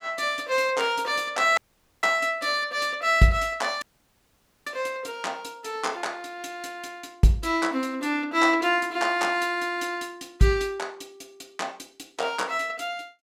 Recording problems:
audio cutting out; at 1.5 s and at 4 s for 1 s

